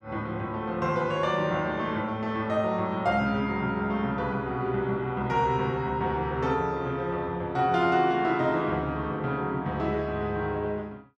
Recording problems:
none

